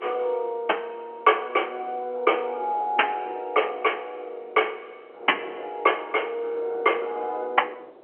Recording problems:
phone line; 320 Hz to 3.1 kHz, G.711
wind on the microphone; below 700 Hz, SNR 20 dB

